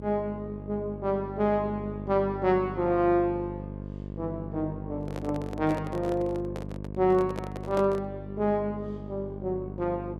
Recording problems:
mains hum; 50 Hz, harmonics up to 700 Hz, SNR 9 dB
microphone handling noise; from 5 to 8 s; peak -2 dB vs average level

